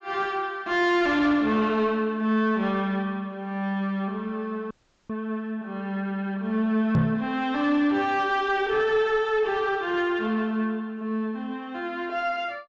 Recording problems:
treble missing; nothing above 8 kHz
distorted audio; soft clipping, signal-to-distortion ratio 11 dB
audio cutting out; at 4.5 s
microphone bump; at 7 s; peak +7 dB vs average level

